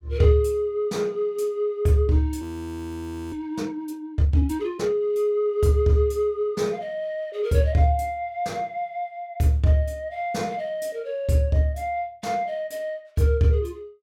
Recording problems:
frozen audio; at 2.5 s for 1 s

